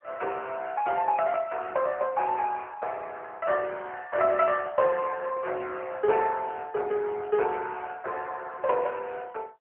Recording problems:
telephone audio; 340 Hz to 3.1 kHz, AMR-NB

